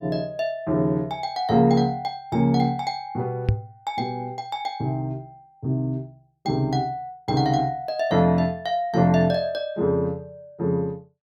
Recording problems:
microphone bump; at 3.5 s; peak +7 dB vs average level

